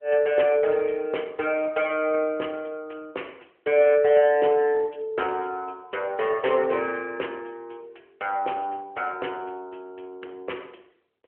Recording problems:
telephone audio; 320 Hz to 3.2 kHz, AMR-NB

